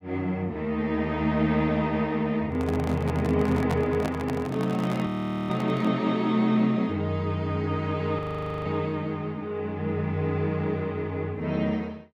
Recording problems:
microphone handling noise; from 2.5 to 6 s; peak -2 dB vs average level
audio freezing; at 5 s and at 8 s

